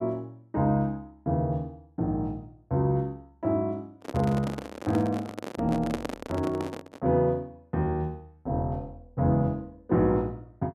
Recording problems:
handling noise; from 4 to 7 s; peak +1 dB vs average level

